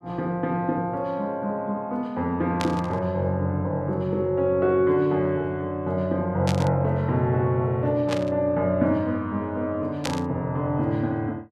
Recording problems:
burst of static; 4 times, first at 2.5 s; peak 0 dB vs average level

